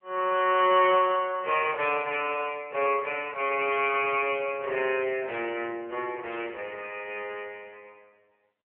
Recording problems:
phone line; 370 Hz to 3.1 kHz, AMR-NB

